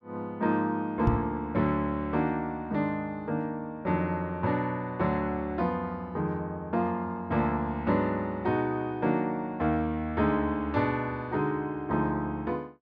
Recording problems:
microphone thump; at 1 s; peak +7 dB vs average level

